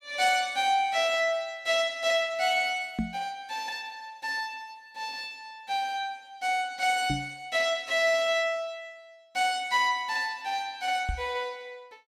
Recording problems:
microphone thump; at 3 s, at 7 s and at 11 s; peak +2 dB vs average level

